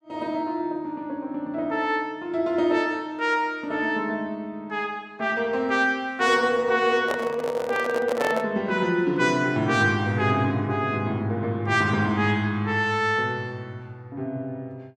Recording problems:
microphone handling noise; from 7 to 8.5 s; peak +2 dB vs average level

